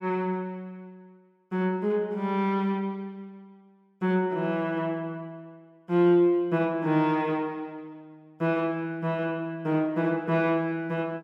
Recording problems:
none

